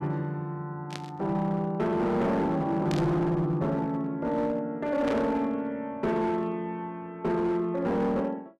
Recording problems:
distortion; hard clipping, signal-to-distortion ratio 11 dB
static burst; at 1 s, at 3 s and at 5 s; peak -6 dB vs average level

